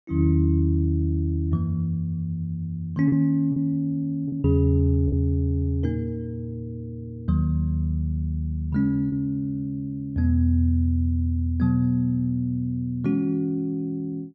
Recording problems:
lost packets; 1.7% of the sound replaced, filled with repeated pitch periods

